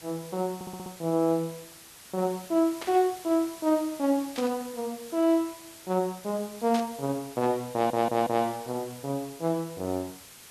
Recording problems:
background hiss; slope 0 dB per octave, SNR 17 dB
stutter; at 0.5 s and at 7.5 s
burst of static; at 3 s, at 4.5 s and at 6.5 s; peak -5 dB vs average level

